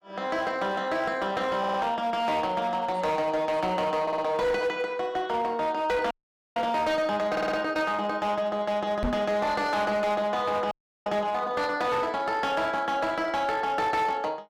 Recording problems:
distorted audio; hard clipping, uneven, signal-to-distortion ratio 12 dB
audio stuttering; at 1.5 s, at 4 s and at 7.5 s
audio freezing; at 6 s and at 11 s
microphone bump; at 9 s; peak +1 dB vs average level

